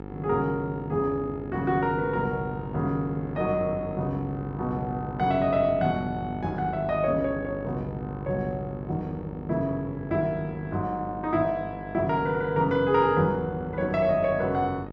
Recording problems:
hum; 50 Hz, harmonics up to 1.8 kHz, SNR 11 dB

